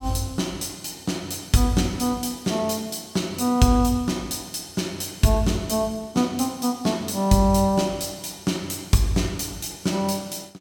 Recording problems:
none

